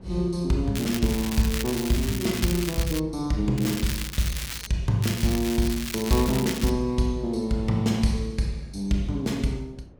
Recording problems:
wind noise; below 360 Hz, SNR 23 dB
crackling; from 1 to 3 s, from 3.5 to 4.5 s and from 5 to 6.5 s; loose cable, SNR 8 dB

